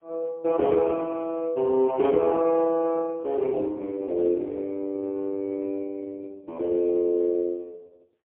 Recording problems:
phone line; 300 Hz to 2.2 kHz, AMR-NB, then MP3

